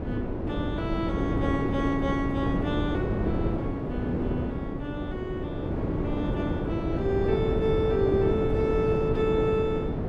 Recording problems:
wind on the microphone; below 400 Hz, SNR 0 dB

